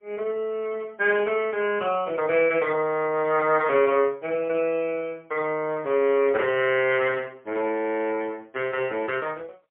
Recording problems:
phone line; 190 Hz to 3.3 kHz, AMR-NB, then MP3

